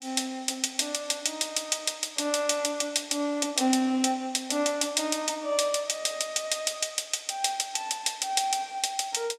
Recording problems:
none

